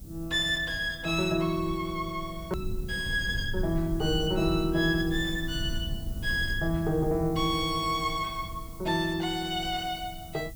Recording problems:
background hiss; SNR 22 dB
low-frequency rumble; below 100 Hz, SNR 10 dB
hard cut with a click; at 2.5 s

